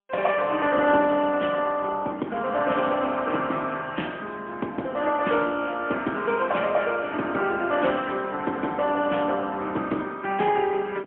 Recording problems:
phone line; 220 Hz to 3.3 kHz, AMR-NB, then MP3

